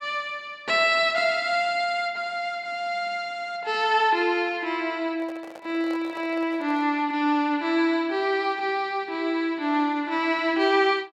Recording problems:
microphone handling noise; from 5 to 7 s; peak -13 dB vs average level

